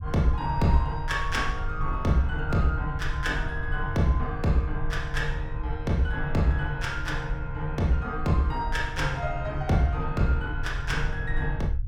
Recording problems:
rumble; below 68 Hz, SNR 7 dB

